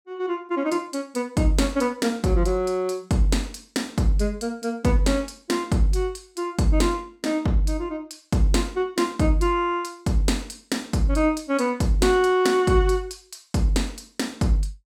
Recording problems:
none

